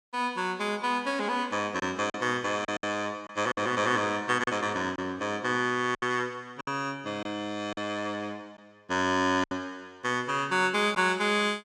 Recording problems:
packet loss; 5% of the sound replaced, filled with silence

